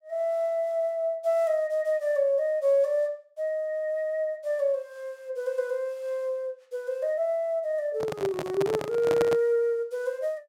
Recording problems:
handling noise; from 8 to 9.5 s; peak +1 dB vs average level

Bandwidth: 16 kHz